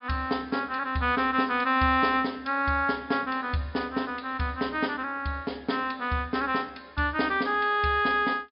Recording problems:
treble missing; nothing above 5.5 kHz

